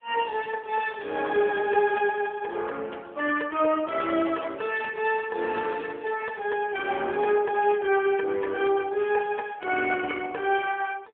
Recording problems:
phone line; 280 Hz to 2.9 kHz, AMR-NB

